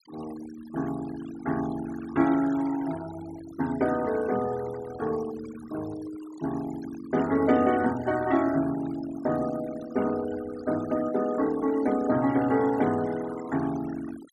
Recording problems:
noise reduction artefacts; signal-to-artefact ratio 16 dB

